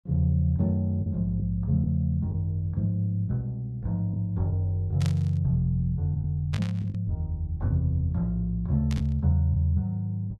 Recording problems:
packet loss; 3% of the sound replaced, filled with the last packet
static burst; at 5 s, at 6.5 s and at 9 s; peak -7 dB vs average level

